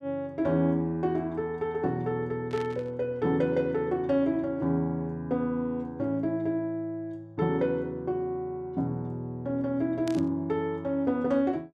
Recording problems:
burst of static; at 2.5 s and at 10 s; peak -8 dB vs average level

